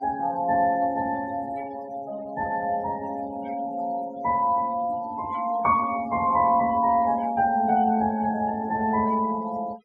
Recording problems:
denoising artefacts; signal-to-artefact ratio 20 dB

